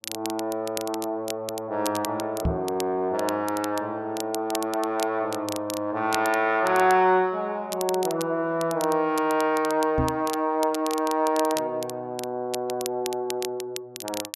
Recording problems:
crackling; vinyl, SNR 12 dB
microphone bump; at 2.5 s and at 10 s; peak +3 dB vs average level

